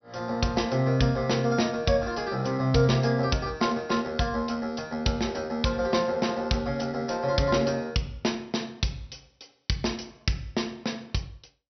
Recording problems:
treble cut off; nothing above 5.9 kHz

